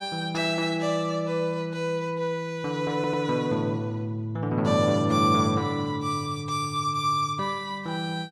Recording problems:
stutter; at 3 s

